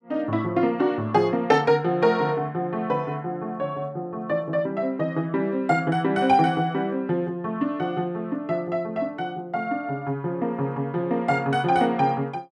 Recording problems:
none

